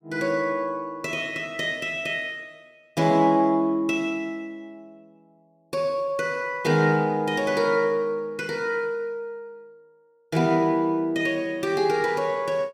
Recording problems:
none

